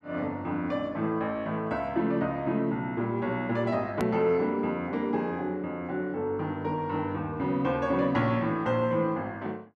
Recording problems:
edit click; at 4 s

